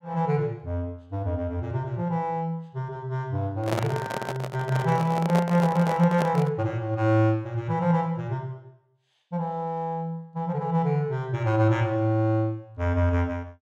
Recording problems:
handling noise; from 3.5 to 6.5 s; peak +1 dB vs average level

